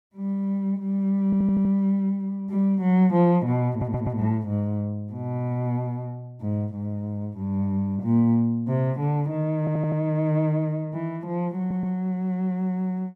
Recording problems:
stutter; 4 times, first at 1.5 s

